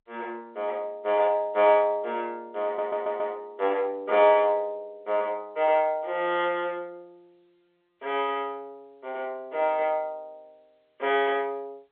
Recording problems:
phone line; 370 Hz to 3.9 kHz, G.711
stutter; at 2.5 s

